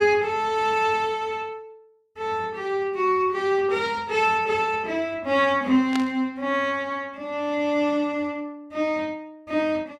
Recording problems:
static burst; at 6 s; peak -3 dB vs average level

